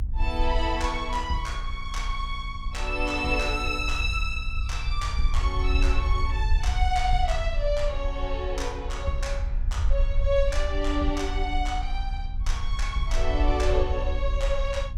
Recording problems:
hum; 60 Hz, harmonics up to 780 Hz, SNR 18 dB
low-frequency rumble; below 58 Hz, SNR 1 dB

